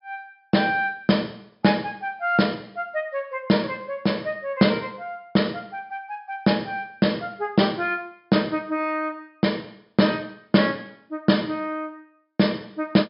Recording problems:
treble missing; nothing above 5.5 kHz

